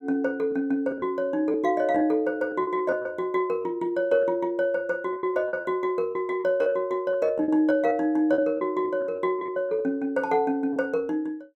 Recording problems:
packet loss; 8% of the sound replaced, filled with repeated pitch periods

